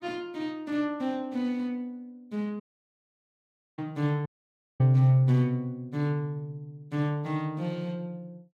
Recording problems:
dropout; at 2.5 s for 1 s and at 4.5 s for 0.5 s

